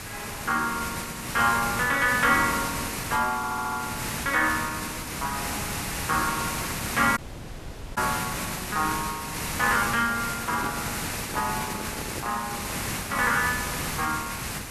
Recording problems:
background hiss; slope -2 dB per octave, SNR 4 dB
stutter; at 3.5 s
audio cutting out; at 7 s for 1 s
microphone handling noise; from 10 to 12 s; peak -4 dB vs average level

